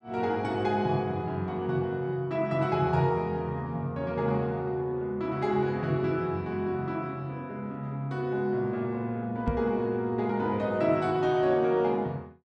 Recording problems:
knock on the microphone; at 9.5 s; peak +1 dB vs average level

